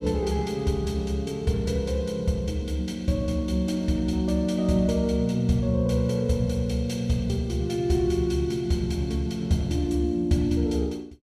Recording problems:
none

